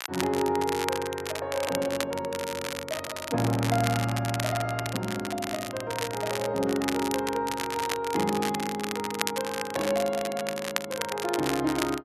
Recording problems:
crackling; vinyl, SNR 5 dB

